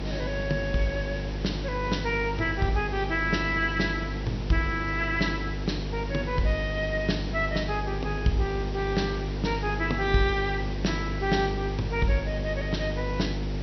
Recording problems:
treble cut off; nothing above 5.9 kHz
hum; 50 Hz, harmonics up to 500 Hz, SNR 4 dB
hiss; SNR 11 dB

